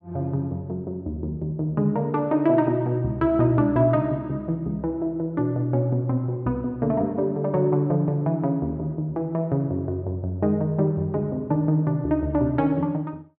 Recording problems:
none

